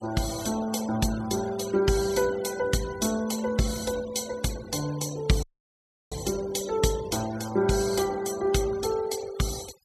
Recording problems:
denoising artefacts; signal-to-artefact ratio 16 dB
audio cutting out; at 5.5 s for 0.5 s

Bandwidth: 14.5 kHz